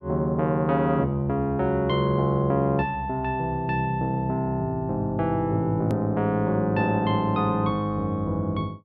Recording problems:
hard cut with a click; at 6 s

